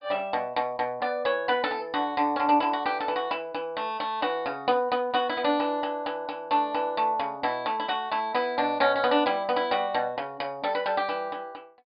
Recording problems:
treble cut off; nothing above 5 kHz

